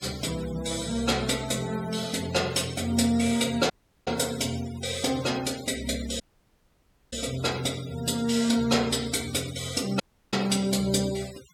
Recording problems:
denoising artefacts; signal-to-artefact ratio 16 dB
dropout; at 3.5 s, at 6 s for 1 s and at 10 s

